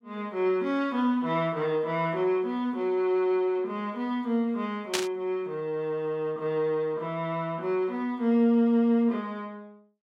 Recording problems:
static burst; at 5 s; peak +4 dB vs average level

